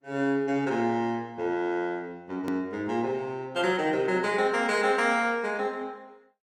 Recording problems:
codec artefacts; Opus, log-spectral distance 2 dB, nothing above 18.3 kHz
click at an edit; at 2.5 s

